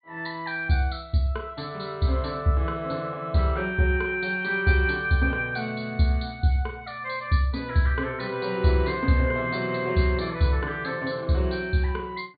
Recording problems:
low-pass filter; nothing above 4.6 kHz

